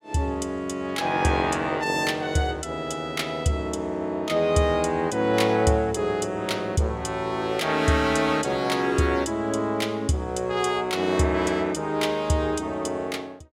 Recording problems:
none

